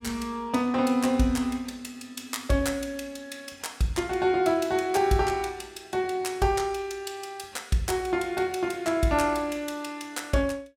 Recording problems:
none

